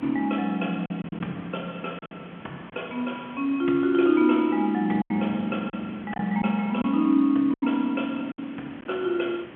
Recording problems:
phone line; 220 Hz to 3.4 kHz, G.711
hiss; SNR 22 dB
wind noise; below 440 Hz, SNR 19 dB
packet loss; 6% of the sound replaced, filled with silence

